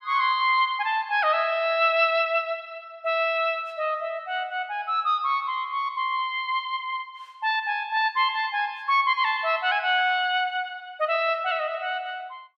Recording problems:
none

